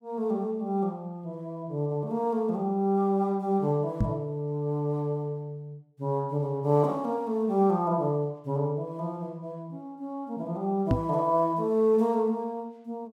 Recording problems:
microphone thump; at 4 s and at 11 s; peak +6 dB vs average level

